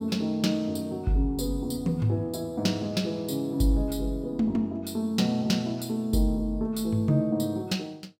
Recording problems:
none

